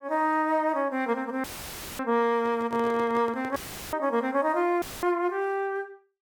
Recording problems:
audio cutting out; at 1.5 s for 0.5 s, at 3.5 s and at 5 s; filled with static
handling noise; from 2.5 to 4 s; peak -9 dB vs average level

